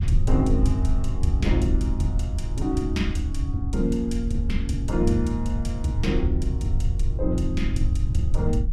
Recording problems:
rumble; below 84 Hz, SNR -1 dB

